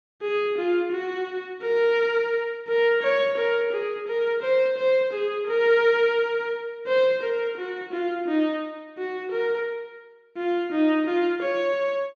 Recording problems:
none

